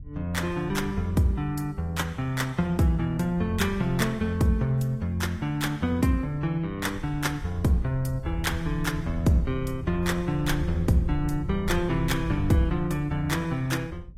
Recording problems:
lossy codec; AAC, log-spectral distance 2 dB, nothing above 14.7 kHz
wind noise; below 86 Hz, SNR 12 dB

